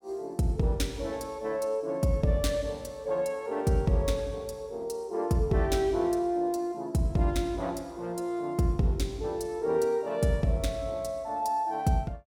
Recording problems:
none

